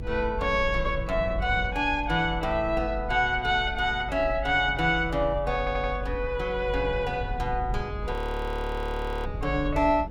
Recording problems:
low-frequency rumble; below 74 Hz, strongest tone 48 Hz, SNR 9 dB
audio stuttering; at 5.5 s
audio freezing; at 8 s for 1 s

